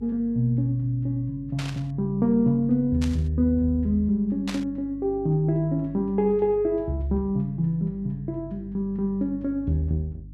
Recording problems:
electrical hum; 50 Hz, harmonics up to 300 Hz, SNR 19 dB
burst of static; at 1.5 s, at 3 s and at 4.5 s; peak -5 dB vs average level

